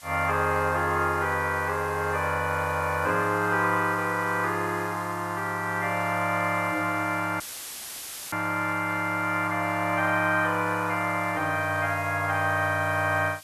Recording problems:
background hiss; slope +2 dB per octave, SNR 20 dB
dropout; at 7.5 s for 1 s; filled with static

